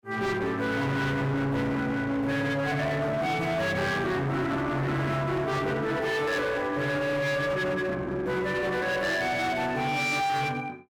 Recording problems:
distorted audio; hard clipping, uneven, signal-to-distortion ratio 7 dB

